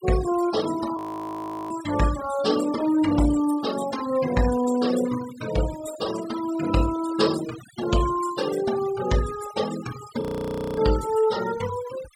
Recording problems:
noise reduction artefacts; signal-to-artefact ratio 13 dB
frozen audio; at 1 s for 0.5 s and at 10 s for 0.5 s

